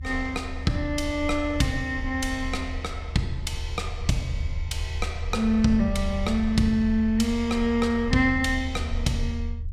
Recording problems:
rumble; below 78 Hz, SNR 7 dB

